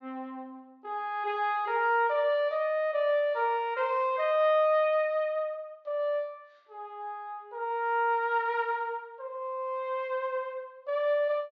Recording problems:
treble cut off; nothing above 7.3 kHz

